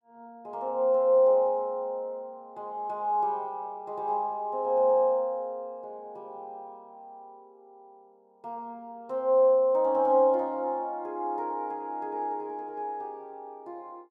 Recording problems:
none

